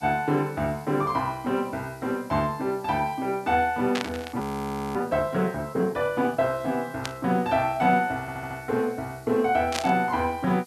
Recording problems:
background hiss; slope +4 dB per octave, SNR 26 dB
static burst; at 4 s, at 7 s and at 9.5 s; peak +1 dB vs average level
frozen audio; at 4.5 s for 0.5 s
audio stuttering; at 8 s

